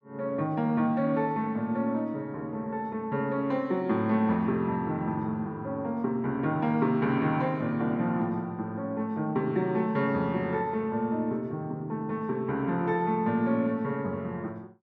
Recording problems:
none

